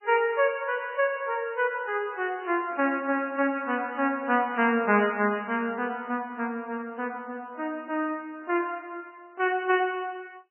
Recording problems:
codec artefacts; MP3, log-spectral distance 2 dB, nothing above 2.4 kHz

